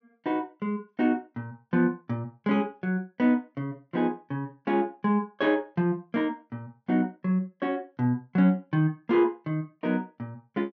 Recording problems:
treble missing; nothing above 6.3 kHz

